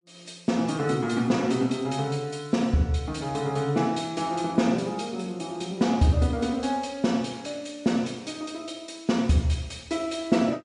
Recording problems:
lossy compression; MP3, log-spectral distance 3 dB, nothing above 8.7 kHz

